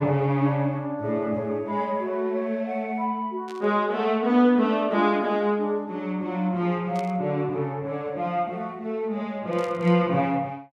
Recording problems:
static burst; at 3.5 s, at 7 s and at 9.5 s; peak -13 dB vs average level

